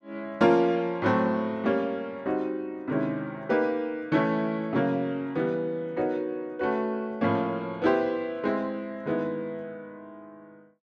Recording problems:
none

